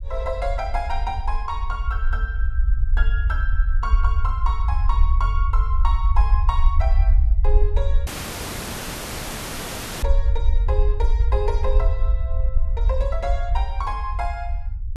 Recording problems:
rumble; below 60 Hz, SNR -7 dB
dropout; at 8 s for 2 s

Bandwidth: 13.5 kHz